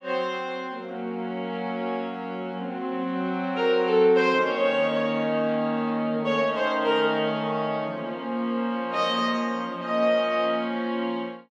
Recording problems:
none

